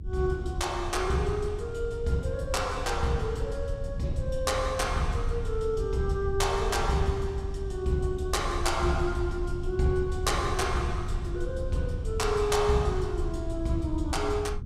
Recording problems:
low-frequency rumble; below 82 Hz, SNR 6 dB

